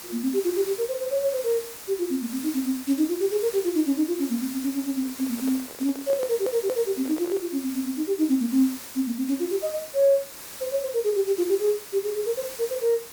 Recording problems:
background hiss; slope -1 dB per octave, SNR 12 dB
microphone handling noise; from 5 to 7.5 s; peak -7 dB vs average level
stutter; at 6 s

